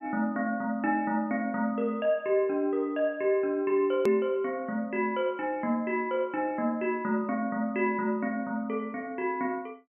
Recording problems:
treble cut off; nothing above 3.1 kHz
edit click; at 4 s

